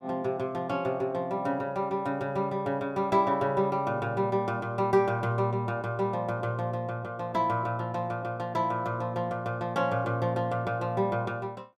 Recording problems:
none

